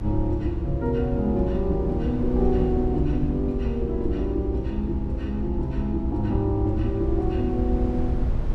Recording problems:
rumble; below 74 Hz, SNR 3 dB

